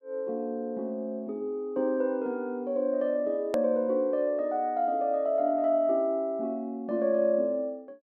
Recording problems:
click at an edit; at 3.5 s

